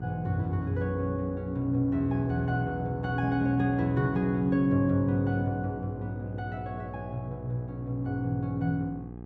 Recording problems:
mains hum; 60 Hz, harmonics up to 1.2 kHz, SNR 12 dB

